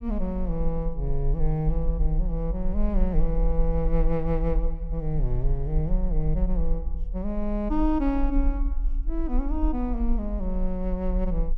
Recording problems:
rumble; below 44 Hz, strongest tone 24 Hz, SNR 1 dB

